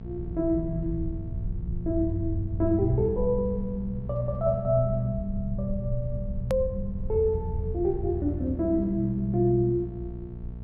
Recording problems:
low-pass filter; nothing above 7.9 kHz
mains hum; 60 Hz, harmonics up to 660 Hz, SNR 12 dB
rumble; below 82 Hz, SNR 10 dB
hard cut with a click; at 6.5 s

